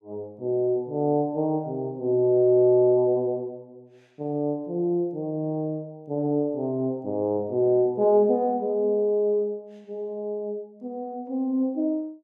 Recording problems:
none

